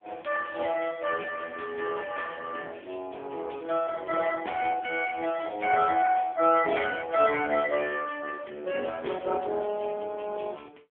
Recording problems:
phone line; 300 Hz to 3.3 kHz, AMR-NB

